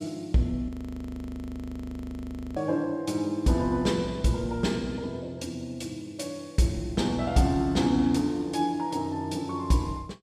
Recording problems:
audio freezing; at 0.5 s for 2 s

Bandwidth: 14.5 kHz